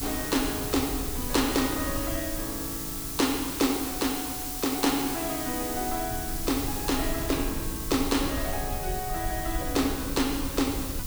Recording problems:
hiss; slope +1 dB per octave, SNR 4 dB
low-frequency rumble; below 96 Hz, SNR 10 dB

